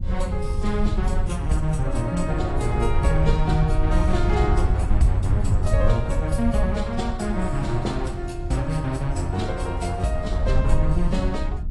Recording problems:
lossy compression; AAC, log-spectral distance 2 dB, nothing above 10.7 kHz
low-frequency rumble; below 78 Hz, SNR 0 dB

